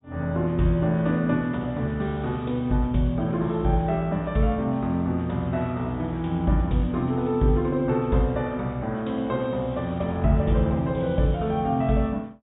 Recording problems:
treble cut off; nothing above 4 kHz

